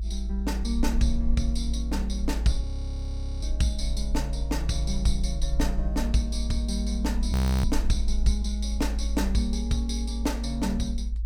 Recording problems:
rumble; below 56 Hz, strongest tone 54 Hz, SNR 0 dB
frozen audio; at 2.5 s for 1 s and at 7.5 s

